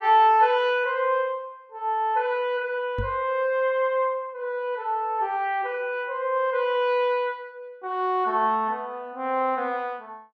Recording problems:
microphone bump; at 3 s; peak -2 dB vs average level

